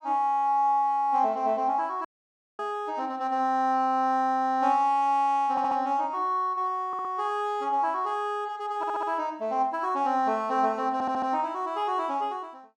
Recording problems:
audio cutting out; at 2 s for 0.5 s
stutter; 4 times, first at 5.5 s

